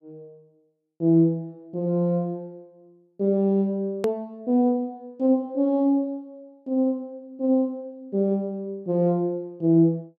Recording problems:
hard cut with a click; at 4 s

